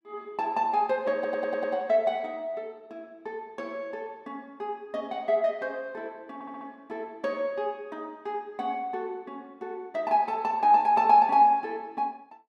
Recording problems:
audio stuttering; at 1 s and at 6.5 s

